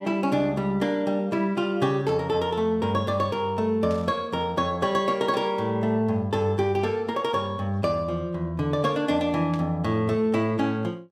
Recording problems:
static burst; at 2 s, at 4 s and at 9.5 s; peak -14 dB vs average level

